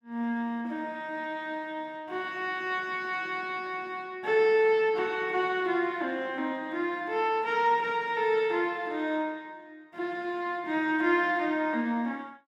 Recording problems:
none

